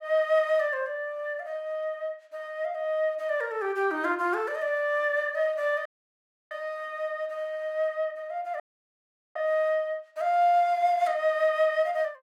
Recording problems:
audio cutting out; at 6 s for 0.5 s and at 8.5 s for 1 s

